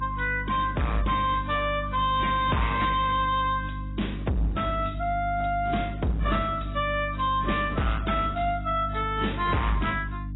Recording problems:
codec artefacts; AAC, then AAC, log-spectral distance 4 dB, nothing above 3.5 kHz
distortion; hard clipping, signal-to-distortion ratio 6 dB
hum; 50 Hz, harmonics up to 300 Hz, SNR 8 dB

